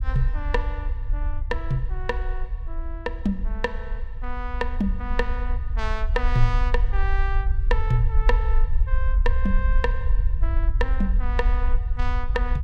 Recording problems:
low-frequency rumble; below 50 Hz, SNR -3 dB

